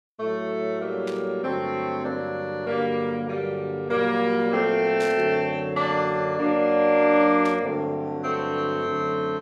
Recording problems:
burst of static; at 1 s, at 5 s and at 7.5 s; peak -10 dB vs average level

